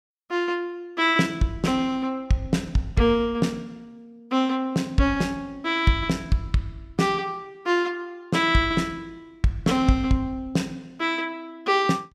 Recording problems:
none

